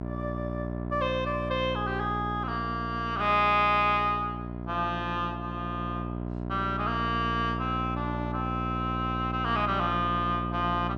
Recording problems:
electrical hum; 60 Hz, harmonics up to 1.4 kHz, SNR 5 dB

